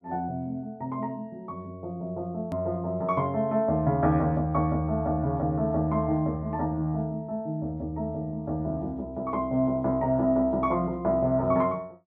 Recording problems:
hard cut with a click; at 2.5 s

